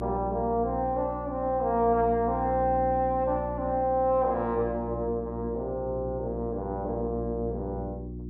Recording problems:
electrical hum; 60 Hz, harmonics up to 360 Hz, SNR 9 dB

